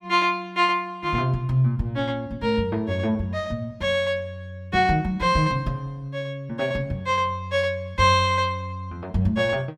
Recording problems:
none

